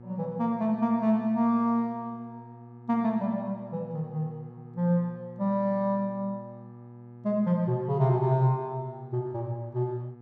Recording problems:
electrical hum; 60 Hz, harmonics up to 1.2 kHz, SNR 19 dB

